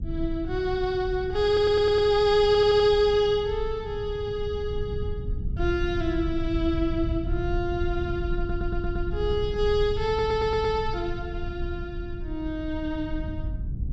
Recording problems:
rumble; below 98 Hz, SNR 8 dB
stutter; 4 times, first at 1.5 s

